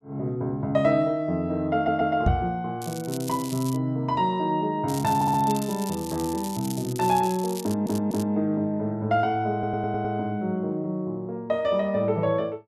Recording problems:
stutter; 4 times, first at 2 s
microphone bump; at 2.5 s; peak +6 dB vs average level
crackling; at 3 s and from 5 to 8 s; loose cable, SNR 14 dB

